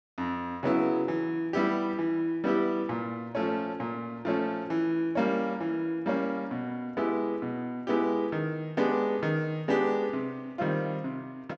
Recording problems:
low-pass filter; nothing above 8 kHz

